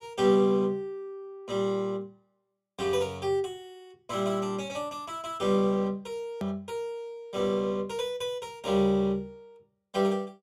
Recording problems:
edit click; at 6.5 s

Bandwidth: 14.5 kHz